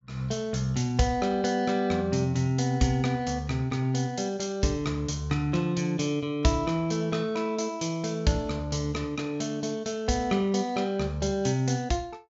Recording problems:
treble cut off; nothing above 7.5 kHz

